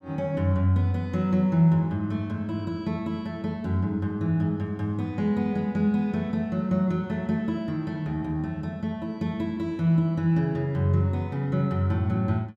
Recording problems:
none

